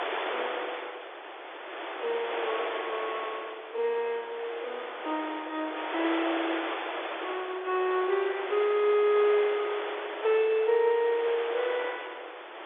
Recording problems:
telephone audio; 300 Hz to 3.9 kHz, G.711
wind on the microphone; below 2.2 kHz, SNR 6 dB

